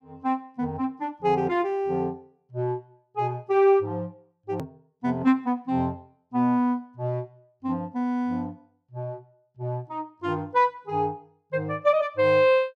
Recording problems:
hard cut with a click; at 4.5 s

